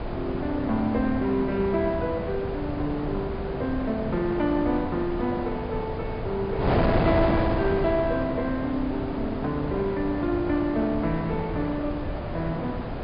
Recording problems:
low-pass filter; nothing above 5 kHz
wind noise; below 680 Hz, SNR 3 dB

